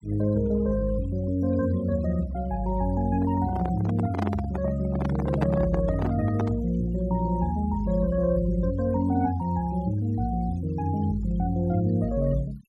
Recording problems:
noise reduction artefacts; signal-to-artefact ratio 22 dB
handling noise; from 3 to 6.5 s; peak 0 dB vs average level

